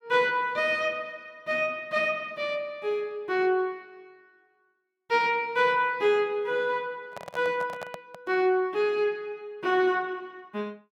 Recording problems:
microphone handling noise; from 7 to 8.5 s; peak -8 dB vs average level

